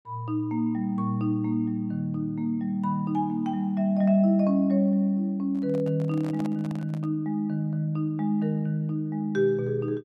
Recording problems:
handling noise; from 5.5 to 7 s; peak -10 dB vs average level

